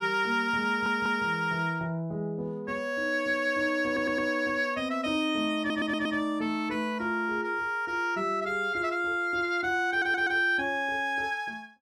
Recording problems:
audio stuttering; 4 times, first at 0.5 s

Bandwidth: 14.5 kHz